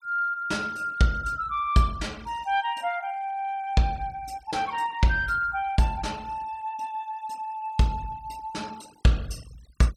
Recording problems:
denoising artefacts; signal-to-artefact ratio 24 dB

